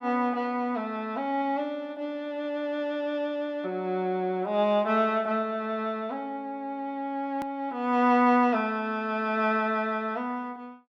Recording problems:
click at an edit; at 7.5 s

